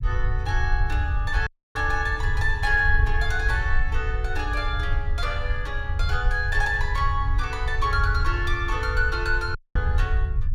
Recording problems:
rumble; below 72 Hz, SNR 1 dB
audio cutting out; at 1.5 s and at 9.5 s

